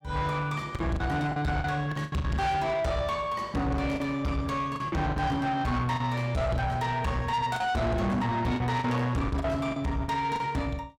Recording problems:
distorted audio; soft clipping, signal-to-distortion ratio 8 dB
lost packets; 8% of the sound replaced, filled with the last packet

